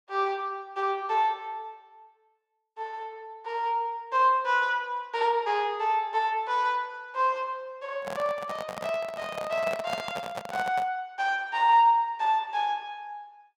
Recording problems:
microphone handling noise; from 8 to 11 s; peak -2 dB vs average level

